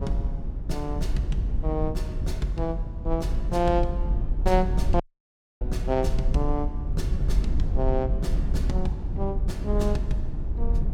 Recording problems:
rumble; below 66 Hz, SNR -1 dB
audio cutting out; at 5 s for 0.5 s

